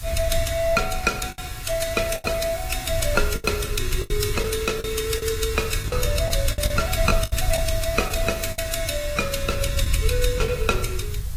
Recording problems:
lossy compression; AAC, log-spectral distance 6 dB, nothing above 14.7 kHz
background hiss; slope 0 dB per octave, SNR 13 dB
low-frequency rumble; below 82 Hz, SNR 5 dB
lost packets; 8% of the sound replaced, filled with the last packet

